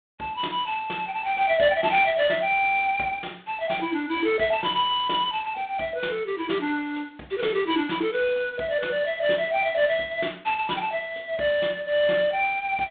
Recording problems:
phone line; 190 Hz to 3.8 kHz, G.726

